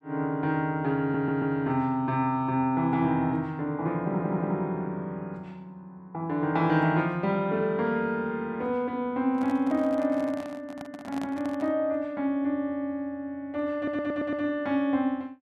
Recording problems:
stutter; at 1 s, at 4 s and at 14 s
handling noise; from 9.5 to 12 s; peak -7 dB vs average level

